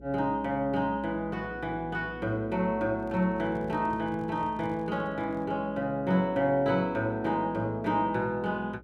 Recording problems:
electrical hum; 60 Hz, harmonics up to 540 Hz, SNR 21 dB
handling noise; from 3 to 5.5 s; peak -11 dB vs average level

